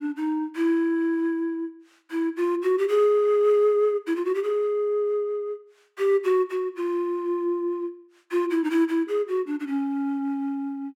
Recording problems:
none

